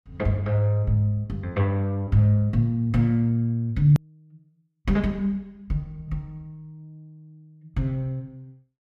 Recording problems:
edit click; at 4 s

